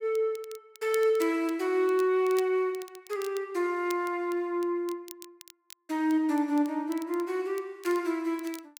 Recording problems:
crackle; vinyl, SNR 21 dB

